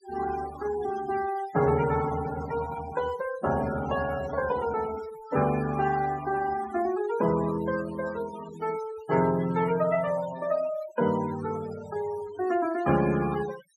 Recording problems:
noise reduction artefacts; signal-to-artefact ratio 14 dB

